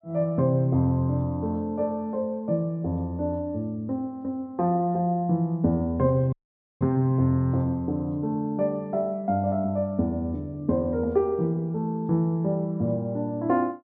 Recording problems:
dropout; at 6.5 s

